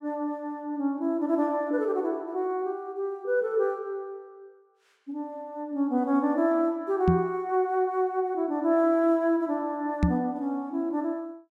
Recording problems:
knock on the microphone; at 7 s and at 10 s; peak +7 dB vs average level

